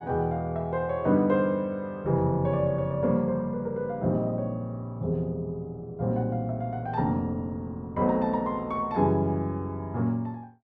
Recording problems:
none

